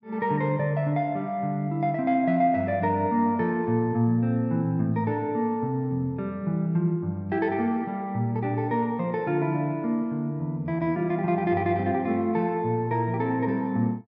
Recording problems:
none

